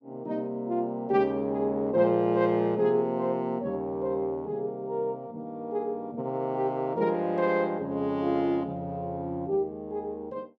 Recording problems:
none

